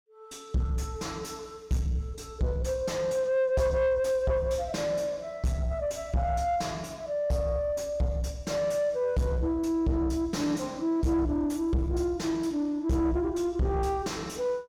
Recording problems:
distortion; soft clipping, signal-to-distortion ratio 8 dB

